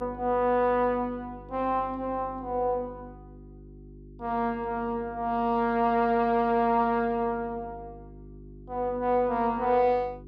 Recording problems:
hum; 50 Hz, harmonics up to 400 Hz, SNR 20 dB

